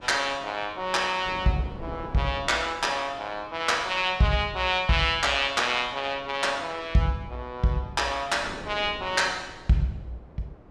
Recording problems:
wind noise; below 580 Hz, SNR 20 dB

